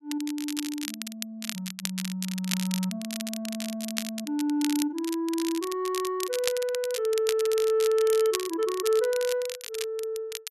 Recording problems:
crackling; vinyl, SNR 7 dB

